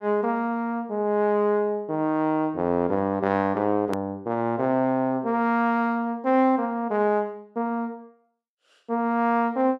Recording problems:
hard cut with a click; at 4 s

